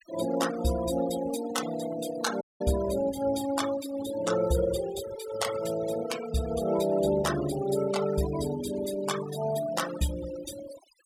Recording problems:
noise reduction artefacts; signal-to-artefact ratio 11 dB
audio cutting out; at 2.5 s

